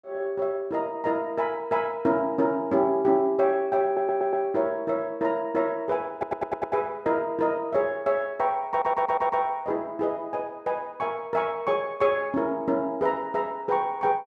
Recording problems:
stutter; at 4 s, at 6 s and at 8.5 s

